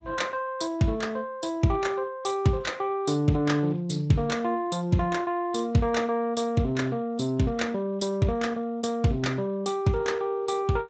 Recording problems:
lossy compression; Speex, log-spectral distance 3 dB, nothing above 8 kHz

